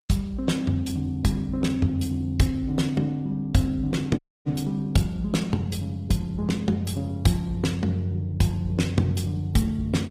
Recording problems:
lossy codec; Opus, log-spectral distance 3 dB, nothing above 15.5 kHz
audio cutting out; at 4 s

